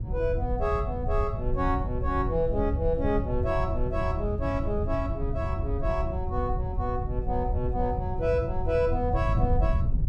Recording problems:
wind on the microphone; below 98 Hz, SNR 1 dB

